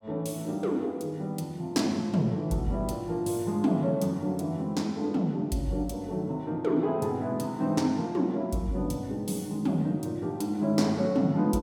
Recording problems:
none

